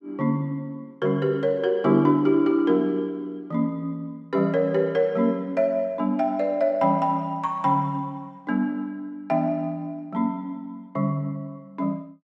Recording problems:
none

